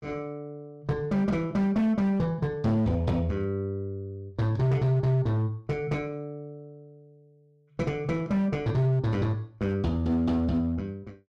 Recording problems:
distorted audio; hard clipping, signal-to-distortion ratio 11 dB

